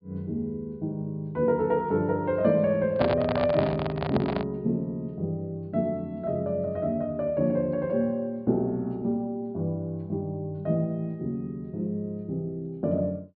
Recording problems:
treble missing; nothing above 4.9 kHz
microphone handling noise; from 3 to 4.5 s; peak +3 dB vs average level

